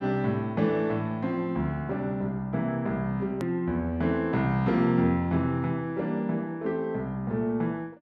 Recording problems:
hard cut with a click; at 3.5 s

